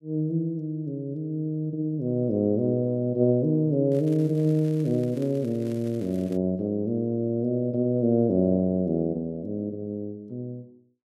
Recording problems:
crackle; from 4 to 6.5 s; loose cable, SNR 27 dB

